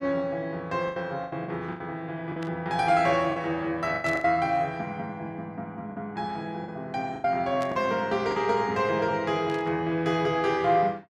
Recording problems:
packet loss; 7% of the sound replaced, filled with the last packet
static burst; 4 times, first at 2.5 s; peak -10 dB vs average level

